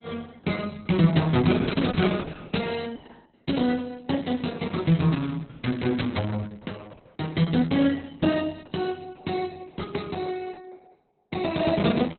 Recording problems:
lossy compression; Opus, log-spectral distance 6 dB, nothing above 4.1 kHz

